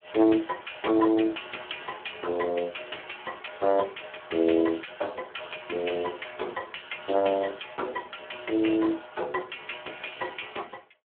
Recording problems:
phone line; 280 Hz to 3.5 kHz, Speex

